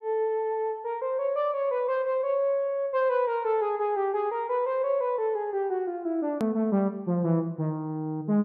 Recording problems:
click at an edit; at 6.5 s

